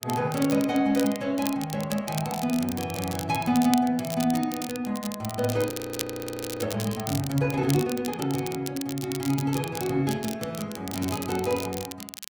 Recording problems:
lossy codec; Opus, log-spectral distance 2 dB
crackling; vinyl, SNR 10 dB
frozen audio; at 5.5 s for 1 s

